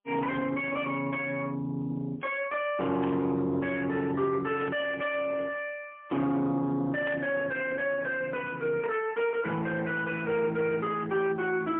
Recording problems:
phone line; 170 Hz to 3.5 kHz, AMR-NB, then MP3
distorted audio; soft clipping, signal-to-distortion ratio 13 dB
burst of static; 4 times, first at 3 s; peak -9 dB vs average level

